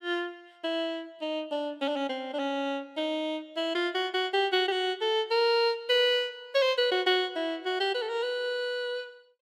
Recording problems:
none

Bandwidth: 15 kHz